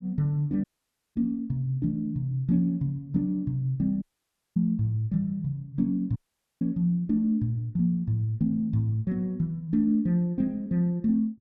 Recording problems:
dropout; at 0.5 s for 0.5 s, at 4 s for 0.5 s and at 6 s

